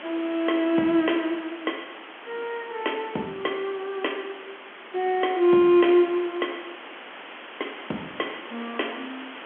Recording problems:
telephone audio; 220 Hz to 3.4 kHz, G.711
background hiss; SNR 15 dB

